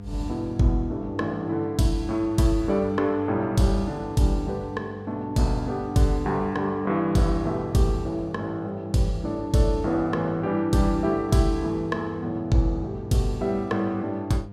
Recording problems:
hum; 50 Hz, harmonics up to 900 Hz, SNR 15 dB

